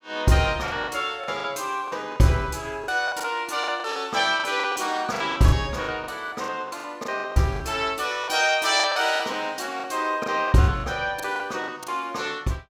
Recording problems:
lost packets; 13% of the sound replaced, filled with the last packet

